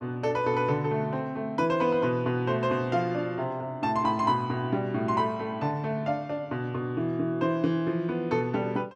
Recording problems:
none

